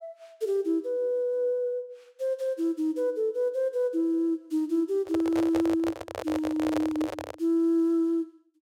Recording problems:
microphone handling noise; from 5 to 7.5 s; peak 0 dB vs average level

